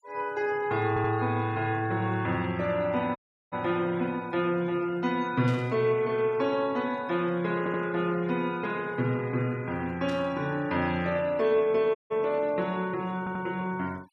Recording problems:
denoising artefacts; signal-to-artefact ratio 24 dB
stutter; at 1 s, at 7.5 s and at 13 s
dropout; at 3 s and at 12 s
static burst; at 5.5 s and at 10 s; peak -14 dB vs average level

